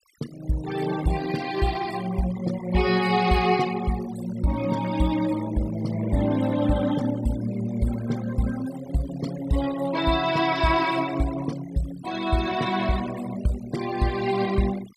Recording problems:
noise reduction artefacts; signal-to-artefact ratio 15 dB

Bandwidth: 15 kHz